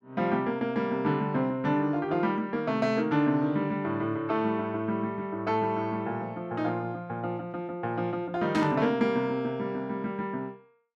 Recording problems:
static burst; at 8.5 s; peak -4 dB vs average level

